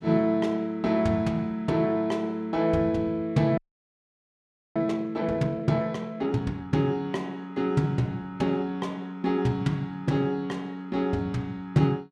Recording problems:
frozen audio; at 3.5 s for 1 s

